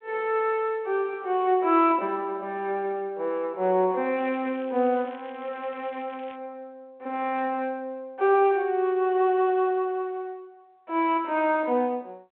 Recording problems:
telephone audio; 190 Hz to 3.6 kHz, G.726
crackling; from 4 to 6.5 s; loose cable, SNR 27 dB

